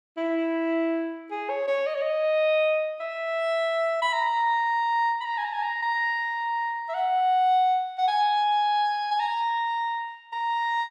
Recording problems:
none

